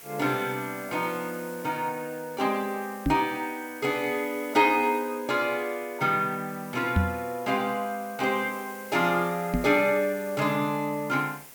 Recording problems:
hiss; SNR 18 dB
knock on the microphone; at 3 s, at 7 s and at 9.5 s; peak +7 dB vs average level

